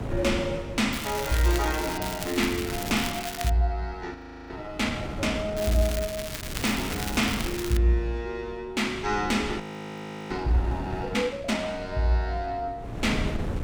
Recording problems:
wind noise; below 300 Hz, SNR 9 dB
crackle; from 1 to 2 s, from 2 to 3.5 s and from 5.5 to 8 s; loose cable, SNR 7 dB
frozen audio; at 4 s and at 9.5 s for 0.5 s

